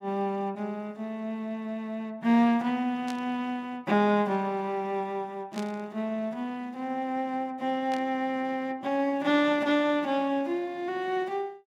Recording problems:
static burst; at 3 s, at 5.5 s and at 8 s; peak -8 dB vs average level

